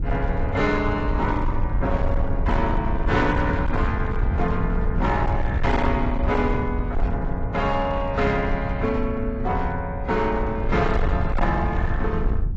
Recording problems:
lossy compression; AAC, log-spectral distance 2 dB, nothing above 7.6 kHz
distorted audio; hard clipping, signal-to-distortion ratio 11 dB
low-frequency rumble; below 94 Hz, SNR 2 dB

